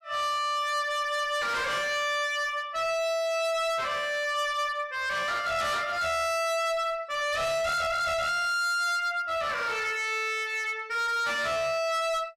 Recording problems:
distorted audio; hard clipping, signal-to-distortion ratio 6 dB

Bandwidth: 14 kHz